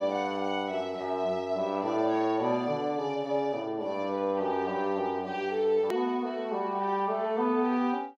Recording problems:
edit click; at 6 s

